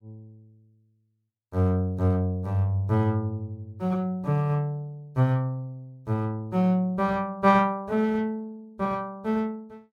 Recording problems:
none

